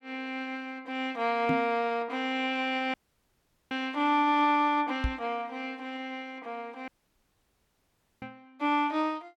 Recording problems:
microphone bump; at 1.5 s, at 5 s and at 8 s; peak +3 dB vs average level
audio cutting out; at 3 s for 1 s and at 7 s for 1.5 s

